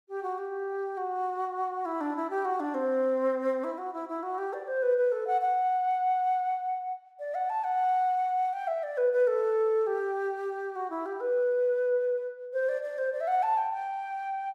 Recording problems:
none

